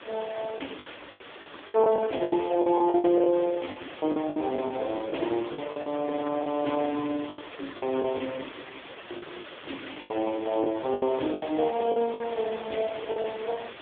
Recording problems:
telephone audio; 240 Hz to 3.5 kHz, AMR-NB
background hiss; SNR 15 dB
lost packets; 12% of the sound replaced, filled with the last packet
crackle; from 0.5 to 3 s and from 7 to 12 s; loose cable, SNR 27 dB

